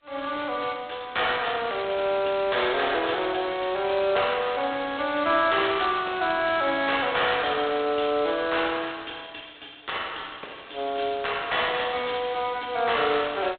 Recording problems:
phone line; 260 Hz to 3.9 kHz, G.726

